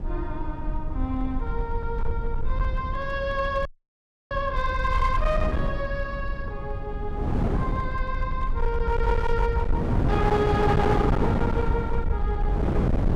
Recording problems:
distortion; hard clipping, uneven, signal-to-distortion ratio 11 dB
rumble; below 64 Hz, SNR 2 dB
wind noise; below 330 Hz, SNR 0 dB
frozen audio; at 3.5 s for 0.5 s

